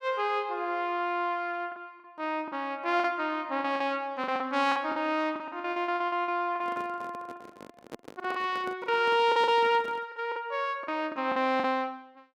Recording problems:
packet loss; 12% of the sound replaced, filled with the last packet
handling noise; from 6.5 to 10 s; peak -7 dB vs average level

